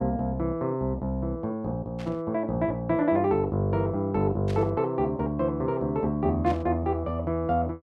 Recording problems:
burst of static; at 2 s, at 4.5 s and at 6.5 s; peak -11 dB vs average level

